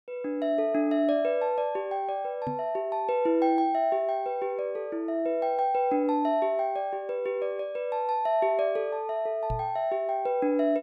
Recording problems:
microphone bump; at 2.5 s and at 9.5 s; peak -3 dB vs average level

